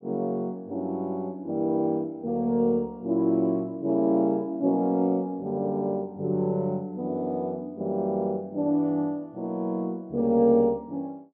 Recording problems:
none

